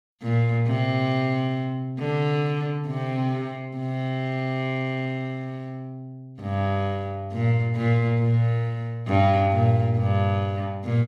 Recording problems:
none

